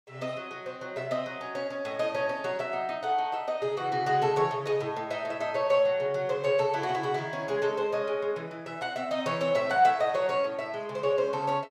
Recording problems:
none

